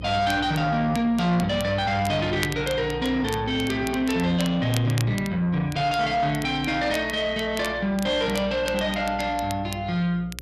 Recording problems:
distortion; soft clipping, signal-to-distortion ratio 11 dB
hum; 60 Hz, harmonics up to 540 Hz, SNR 16 dB
crackling; vinyl, SNR 16 dB

